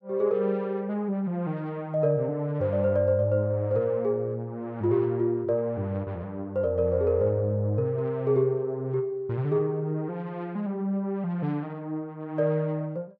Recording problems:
none

